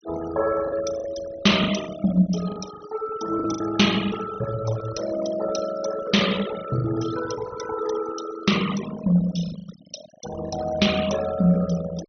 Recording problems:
treble cut off; nothing above 6.2 kHz
noise reduction artefacts; signal-to-artefact ratio 11 dB
lost packets; 7% of the sound replaced, filled with the last packet

